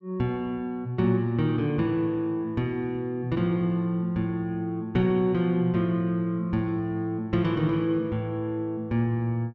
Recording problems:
none

